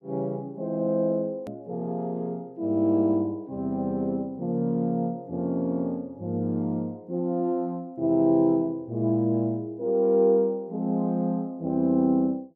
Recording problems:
hard cut with a click; at 1.5 s

